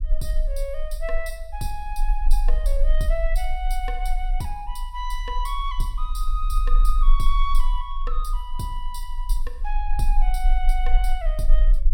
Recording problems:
rumble; below 34 Hz, strongest tone 24 Hz, SNR -6 dB

